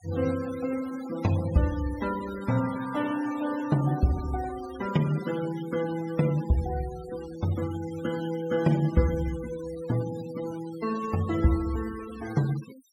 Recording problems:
noise reduction artefacts; signal-to-artefact ratio 16 dB

